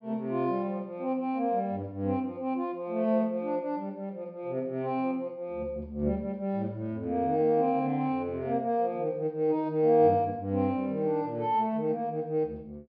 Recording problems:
treble cut off; nothing above 5.5 kHz

